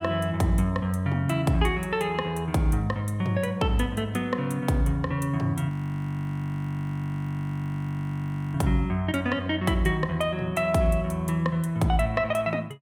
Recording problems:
audio freezing; at 5.5 s for 3 s

